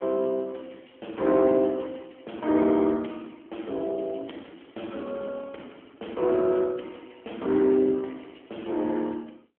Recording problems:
phone line; 220 Hz to 3.3 kHz, AMR-NB

